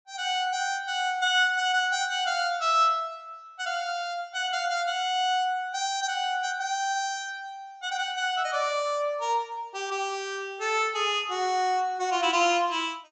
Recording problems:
treble missing; nothing above 8 kHz

